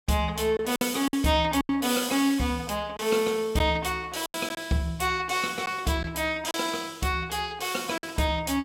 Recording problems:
packet loss; 5% of the sound replaced, filled with silence

